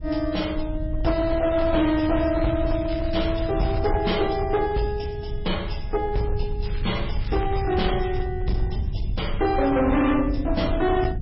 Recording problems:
lossy compression; MP3, log-spectral distance 4 dB, nothing above 5.5 kHz
distortion; hard clipping, signal-to-distortion ratio 12 dB
low-frequency rumble; below 94 Hz, SNR 6 dB
crackling; from 1 to 4 s and from 6.5 to 8 s; loose cable, SNR 18 dB

